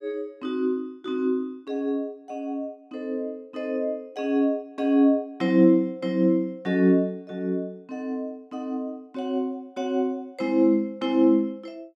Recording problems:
none

